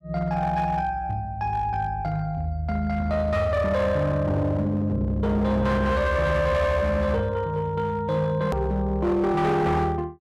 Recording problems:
distortion; hard clipping, uneven, signal-to-distortion ratio 10 dB
hard cut with a click; at 8.5 s

